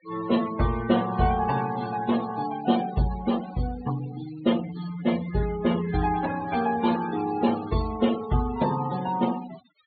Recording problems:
treble missing; nothing above 4.5 kHz
denoising artefacts; signal-to-artefact ratio 14 dB

